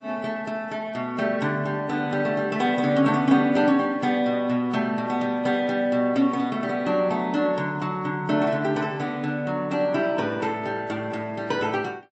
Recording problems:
lossy compression; MP3, log-spectral distance 2 dB, nothing above 7.6 kHz

